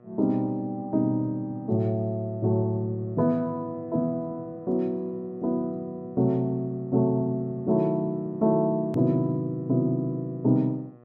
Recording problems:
electrical hum; 60 Hz, harmonics up to 1.9 kHz, SNR 26 dB
click at an edit; at 9 s

